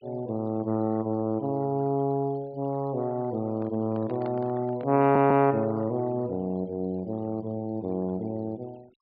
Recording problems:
low-pass filter; nothing above 4.9 kHz
denoising artefacts; signal-to-artefact ratio 28 dB
microphone handling noise; from 3.5 to 5 s; peak -10 dB vs average level
stutter; at 5 s

